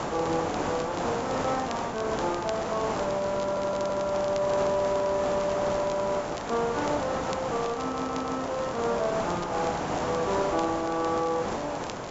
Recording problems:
treble cut off; nothing above 8 kHz
background hiss; SNR 2 dB
crackling; vinyl, SNR 18 dB
audio stuttering; at 3.5 s and at 8 s

